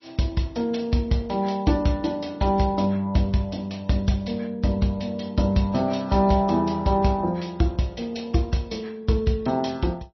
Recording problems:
lossy codec; MP3, log-spectral distance 3 dB, nothing above 5.8 kHz

